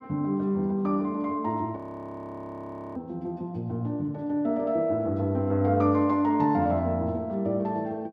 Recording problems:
audio freezing; at 2 s for 1 s

